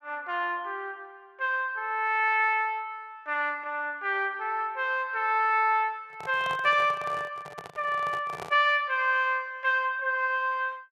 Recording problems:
microphone handling noise; from 6 to 8.5 s; peak -7 dB vs average level

